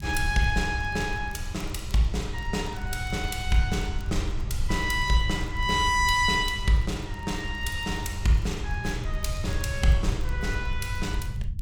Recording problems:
low-frequency rumble; below 86 Hz, SNR 6 dB
crackling; vinyl, SNR 29 dB

